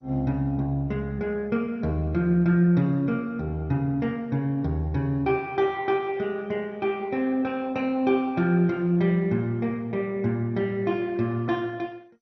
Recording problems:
lossy codec; MP2, log-spectral distance 2 dB, nothing above 5.8 kHz

